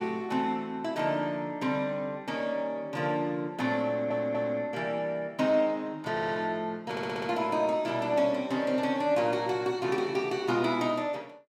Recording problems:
stutter; at 4 s, at 6 s and at 7 s

